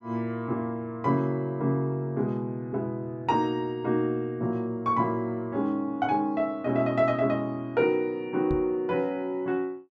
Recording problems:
microphone bump; at 8.5 s; peak -1 dB vs average level

